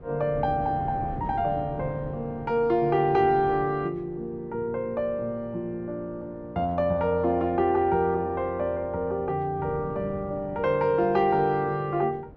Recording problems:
wind on the microphone; below 350 Hz, SNR 16 dB

